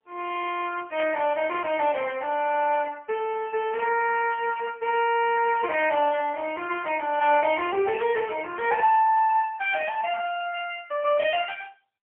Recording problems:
telephone audio; 340 Hz to 3.1 kHz, AMR-NB, then MP3
burst of static; at 1 s; peak -4 dB vs average level

